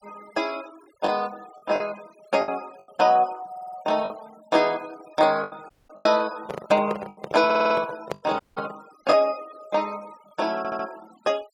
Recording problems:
noise reduction artefacts; signal-to-artefact ratio 23 dB
lost packets; 5% of the sound replaced, filled with the last packet
audio stuttering; at 3.5 s, at 7.5 s and at 11 s
audio cutting out; at 5.5 s and at 8.5 s
handling noise; from 6.5 to 9 s; peak -1 dB vs average level

